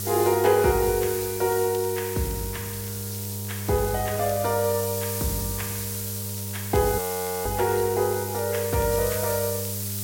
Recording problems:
hum; 50 Hz, harmonics up to 600 Hz, SNR 10 dB
background hiss; slope +6 dB per octave, SNR 6 dB
crackle; vinyl, SNR 24 dB
frozen audio; at 7 s

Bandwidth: 16.5 kHz